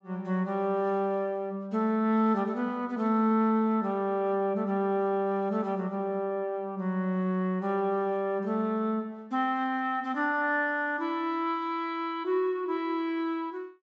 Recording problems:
treble missing; nothing above 8 kHz

